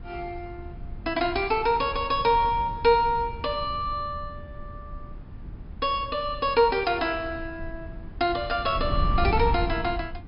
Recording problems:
treble missing; nothing above 5.5 kHz
wind noise; below 100 Hz, SNR 11 dB

